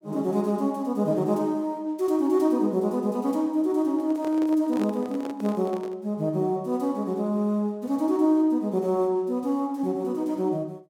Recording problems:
microphone handling noise; from 4 to 6 s; peak -6 dB vs average level

